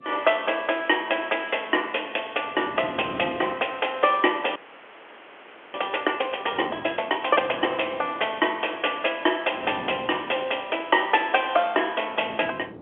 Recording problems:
phone line; 280 Hz to 3.3 kHz, G.711
wind noise; below 470 Hz, SNR 18 dB
frozen audio; at 4.5 s for 1 s

